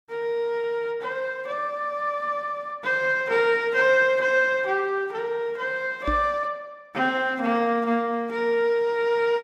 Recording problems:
microphone thump; at 6 s; peak -2 dB vs average level

